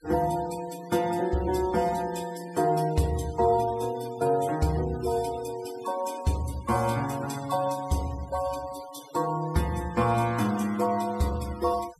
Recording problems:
denoising artefacts; signal-to-artefact ratio 18 dB

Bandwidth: 15 kHz